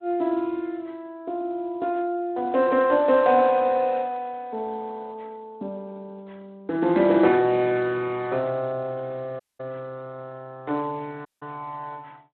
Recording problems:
telephone audio; 280 Hz to 3.5 kHz, Speex
audio cutting out; at 9.5 s and at 11 s

